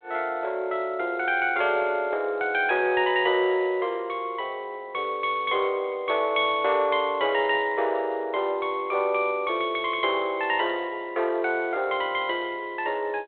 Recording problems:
phone line; 320 Hz to 3.5 kHz, G.726

